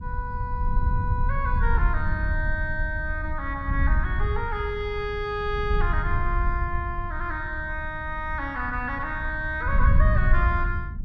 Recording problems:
wind noise; below 76 Hz, SNR -1 dB

